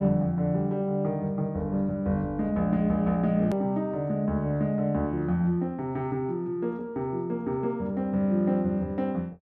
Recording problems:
edit click; at 3.5 s

